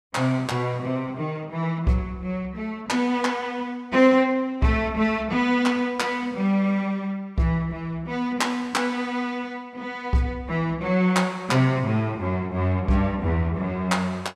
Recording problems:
none

